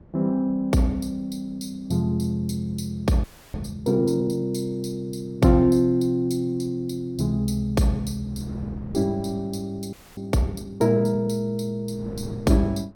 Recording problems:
wind noise; below 320 Hz, SNR 21 dB
frozen audio; at 3 s and at 10 s

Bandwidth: 18 kHz